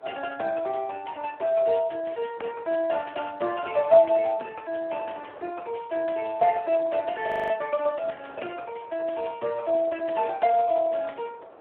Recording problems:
phone line; 280 Hz to 3.3 kHz, Speex
wind noise; below 930 Hz, SNR 24 dB
frozen audio; at 7.5 s

